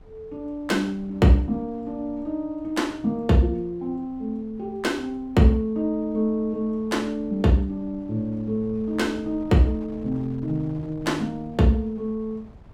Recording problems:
wind on the microphone; below 250 Hz, SNR 22 dB

